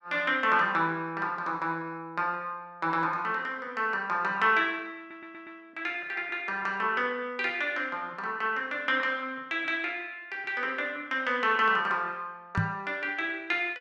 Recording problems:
audio stuttering; at 5 s
microphone thump; at 13 s; peak +4 dB vs average level

